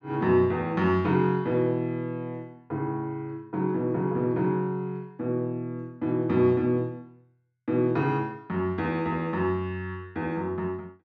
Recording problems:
none

